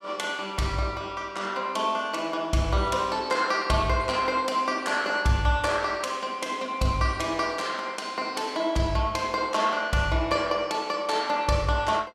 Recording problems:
none

